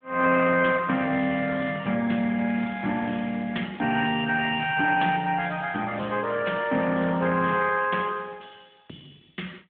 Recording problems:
phone line; 190 Hz to 3.4 kHz, AMR-NB

